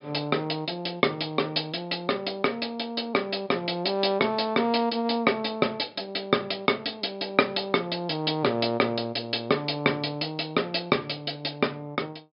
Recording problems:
treble cut off; nothing above 5.5 kHz

